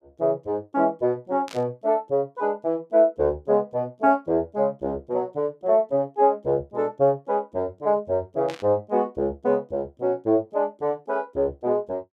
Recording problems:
static burst; at 1.5 s and at 8.5 s; peak -10 dB vs average level

